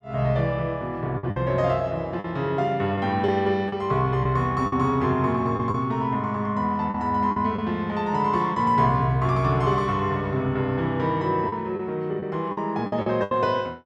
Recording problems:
packet loss; 5% of the sound replaced, filled with the last packet

